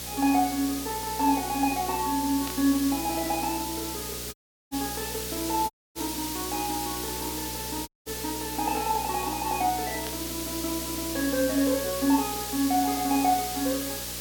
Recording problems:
hum; 60 Hz, harmonics up to 600 Hz, SNR 14 dB
background hiss; slope +1 dB per octave, SNR 4 dB
burst of static; at 2.5 s and at 10 s; peak -6 dB vs average level
audio cutting out; at 4.5 s, at 5.5 s and at 8 s

